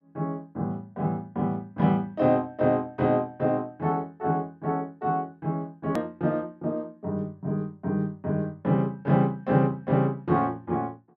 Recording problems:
click at an edit; at 6 s

